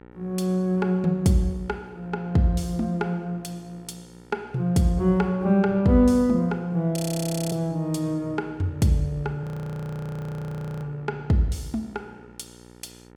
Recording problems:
hum; 60 Hz, harmonics up to 1.9 kHz, SNR 24 dB
audio freezing; at 7 s for 0.5 s and at 9.5 s for 1.5 s

